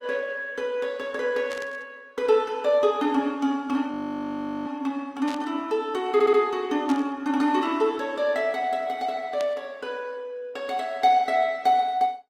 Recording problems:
lossy codec; Opus, log-spectral distance 2 dB, nothing above 19 kHz
burst of static; 4 times, first at 1.5 s; peak -9 dB vs average level
frozen audio; at 4 s for 0.5 s
stutter; at 6 s

